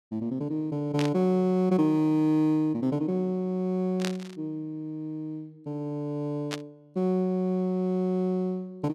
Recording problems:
burst of static; at 1 s, at 4 s and at 6.5 s; peak -2 dB vs average level

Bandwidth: 14 kHz